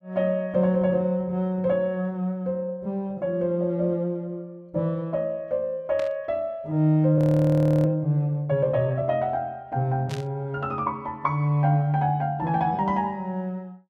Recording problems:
burst of static; at 6 s and at 10 s; peak -9 dB vs average level
frozen audio; at 7 s for 0.5 s

